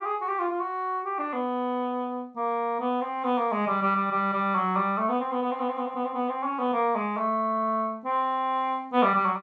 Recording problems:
none

